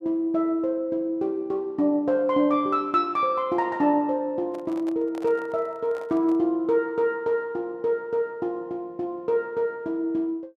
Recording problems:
handling noise; from 4.5 to 6.5 s; peak -11 dB vs average level

